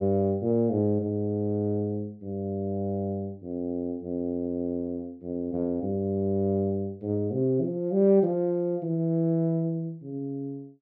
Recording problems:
none

